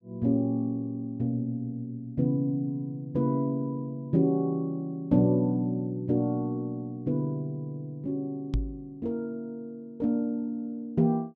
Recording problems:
knock on the microphone; at 8.5 s; peak +4 dB vs average level

